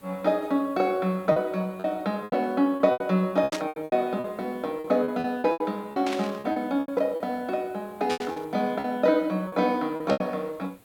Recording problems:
hiss; slope -5 dB per octave, SNR 29 dB
lost packets; 13% of the sound replaced, filled with repeated pitch periods
static burst; at 3.5 s, at 6 s and at 8 s; peak -3 dB vs average level

